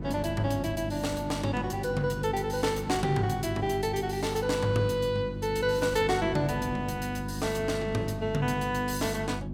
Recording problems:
hum; 50 Hz, harmonics up to 350 Hz, SNR 7 dB
wind on the microphone; below 310 Hz, SNR 17 dB

